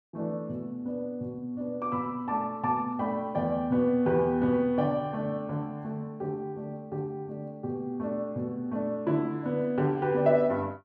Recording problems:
none

